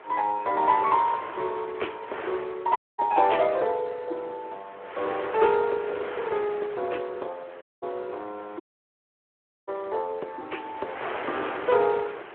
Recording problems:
telephone audio; 320 Hz to 3.6 kHz, Speex
wind on the microphone; below 1.8 kHz, SNR 11 dB
audio cutting out; at 3 s, at 7.5 s and at 8.5 s for 1 s

